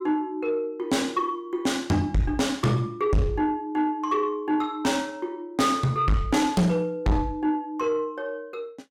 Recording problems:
distortion; soft clipping, signal-to-distortion ratio 6 dB

